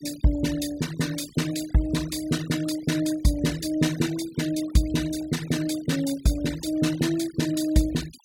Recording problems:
noise reduction artefacts; signal-to-artefact ratio 16 dB

